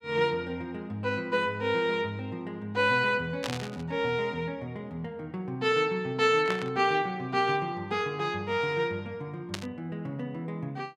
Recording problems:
burst of static; at 3.5 s, at 6.5 s and at 9.5 s; peak 0 dB vs average level

